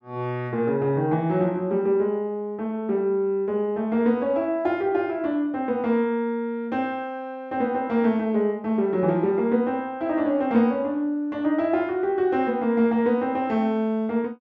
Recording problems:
none

